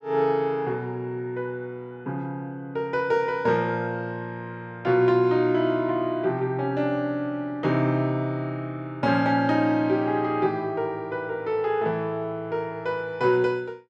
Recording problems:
none

